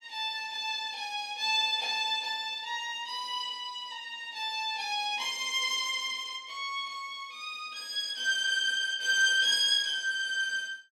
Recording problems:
none

